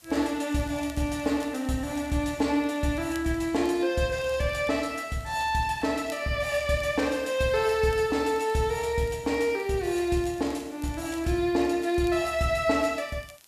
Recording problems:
hiss; slope 0 dB per octave, SNR 28 dB
crackling; vinyl, SNR 28 dB

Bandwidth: 14 kHz